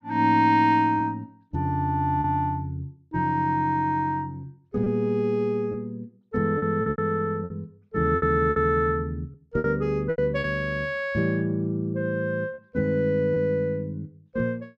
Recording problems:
packet loss; 5% of the sound replaced, filled with repeated pitch periods

